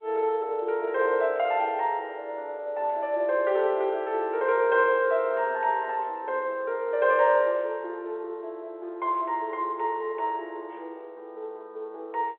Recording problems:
telephone audio; 340 Hz to 3.5 kHz, G.711

